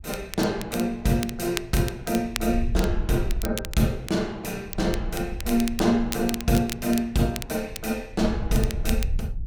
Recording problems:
wind noise; below 64 Hz, SNR 8 dB
crackling; vinyl, SNR 11 dB

